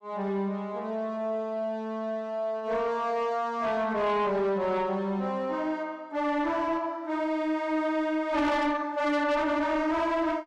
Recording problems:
distortion; soft clipping, signal-to-distortion ratio 10 dB

